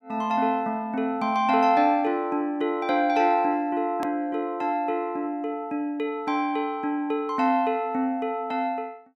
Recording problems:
click at an edit; at 4 s

